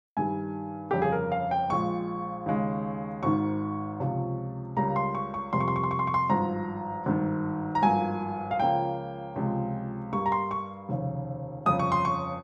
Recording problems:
none

